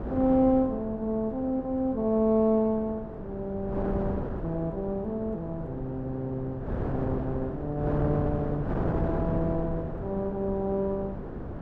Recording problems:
wind on the microphone; below 450 Hz, SNR 6 dB

